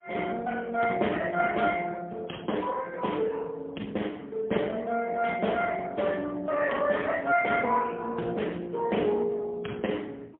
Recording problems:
phone line; 240 Hz to 2.9 kHz, AMR-NB, then MP3

